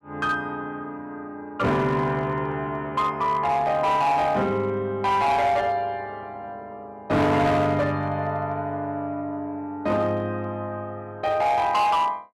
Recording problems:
distortion; hard clipping, signal-to-distortion ratio 10 dB

